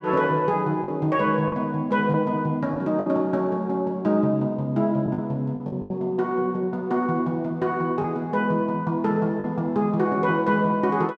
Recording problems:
lost packets; 4% of the sound replaced, filled with the last packet

